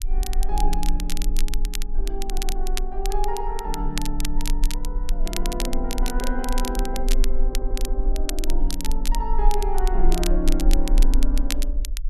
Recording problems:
rumble; below 34 Hz, strongest tone 18 Hz, SNR -4 dB
crackle; vinyl, SNR 4 dB
stutter; at 2.5 s and at 7.5 s

